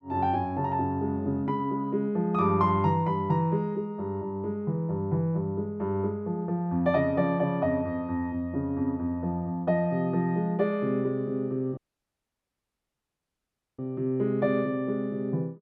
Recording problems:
audio cutting out; at 12 s for 2 s

